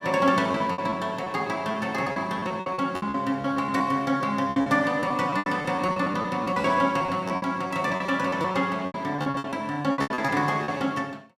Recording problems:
lost packets; 17% of the sound replaced, filled with repeated pitch periods

